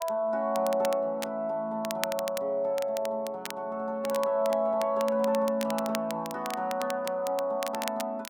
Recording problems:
crackling; vinyl, SNR 12 dB

